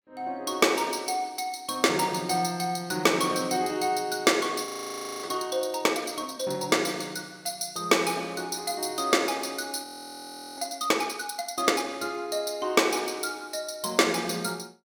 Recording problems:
frozen audio; at 4.5 s for 0.5 s and at 10 s for 0.5 s

